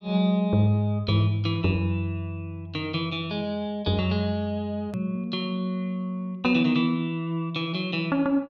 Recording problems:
edit click; at 5 s

